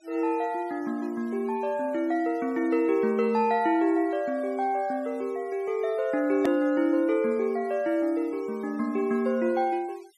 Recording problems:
noise reduction artefacts; signal-to-artefact ratio 28 dB
hard cut with a click; at 6.5 s

